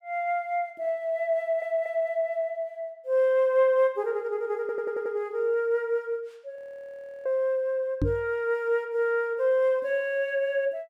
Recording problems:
audio stuttering; at 1.5 s and at 4.5 s
frozen audio; at 6.5 s for 0.5 s
knock on the microphone; at 8 s; peak +3 dB vs average level

